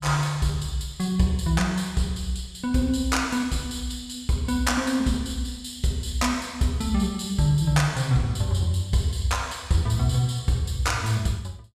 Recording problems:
none

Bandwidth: 14.5 kHz